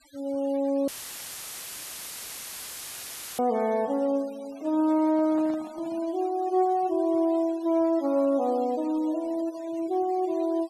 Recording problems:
denoising artefacts; signal-to-artefact ratio 24 dB
audio cutting out; at 1 s for 2.5 s; filled with static
microphone handling noise; from 4.5 to 6 s; peak -13 dB vs average level

